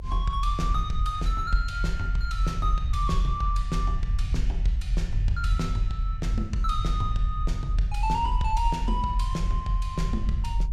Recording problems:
rumble; below 52 Hz, strongest tone 44 Hz, SNR -2 dB

